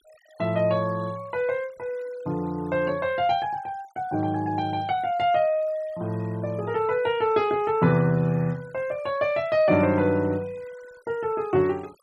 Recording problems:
noise reduction artefacts; signal-to-artefact ratio 27 dB

